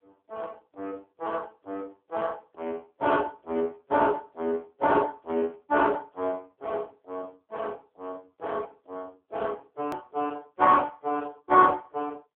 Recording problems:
phone line; 260 Hz to 2.6 kHz, AMR-NB
edit click; at 10 s

